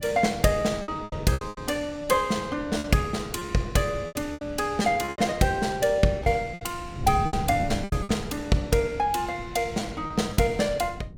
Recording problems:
wind on the microphone; below 180 Hz, SNR 13 dB
packet loss; 11% of the sound replaced, filled with repeated pitch periods

